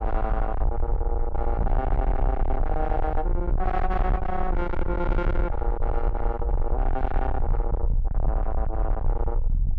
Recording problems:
distortion; soft clipping, signal-to-distortion ratio 7 dB
low-frequency rumble; below 54 Hz, SNR -2 dB
microphone bump; at 1.5 s; peak +1 dB vs average level

